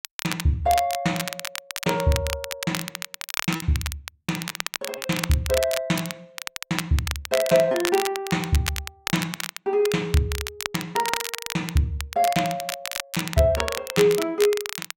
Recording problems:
crackling; vinyl, SNR 6 dB
lost packets; 1.9% of the sound replaced, filled with repeated pitch periods

